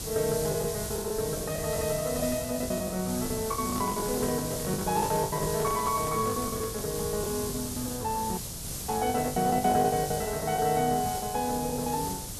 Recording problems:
hiss; SNR 5 dB
packet loss; 15% of the sound replaced, filled with the last packet
handling noise; from 3.5 to 7 s; peak -5 dB vs average level
dropout; at 8.5 s for 0.5 s

